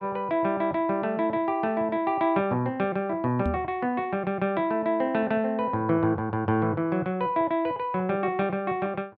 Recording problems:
microphone bump; at 3.5 s; peak +1 dB vs average level

